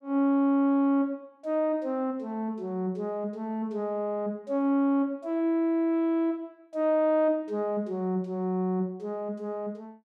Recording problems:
none

